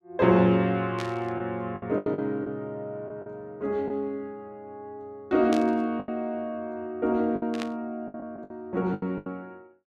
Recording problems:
lost packets; 8% of the sound replaced, filled with the last packet
static burst; at 1 s, at 5.5 s and at 7.5 s; peak -4 dB vs average level

